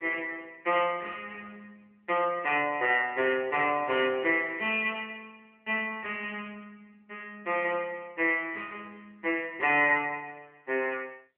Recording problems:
phone line; 300 Hz to 3.3 kHz, AMR-NB

